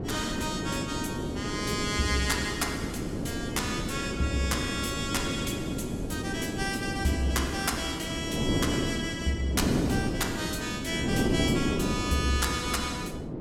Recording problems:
wind noise; below 380 Hz, SNR 1 dB

